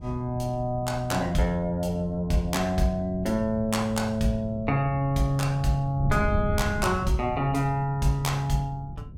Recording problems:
wind noise; below 140 Hz, SNR 10 dB

